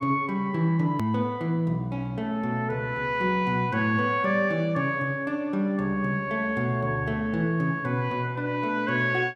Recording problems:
edit click; at 1 s

